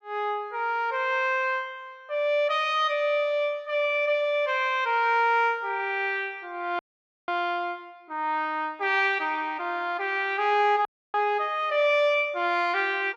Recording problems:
audio freezing; at 7 s and at 11 s

